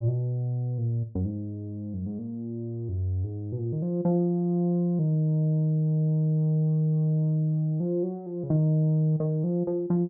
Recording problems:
none

